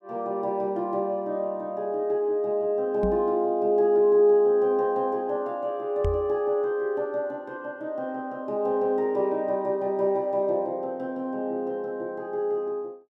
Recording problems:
microphone bump; at 3 s and at 6 s; peak 0 dB vs average level

